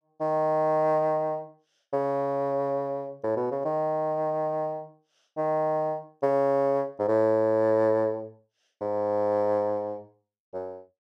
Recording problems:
none

